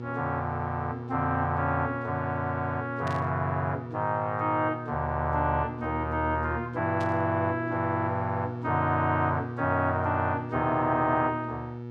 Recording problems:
electrical hum; 60 Hz, harmonics up to 1.3 kHz, SNR 9 dB
static burst; at 3 s and at 7 s; peak -11 dB vs average level

